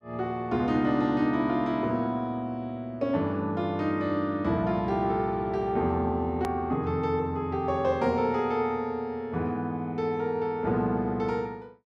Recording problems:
click at an edit; at 6.5 s

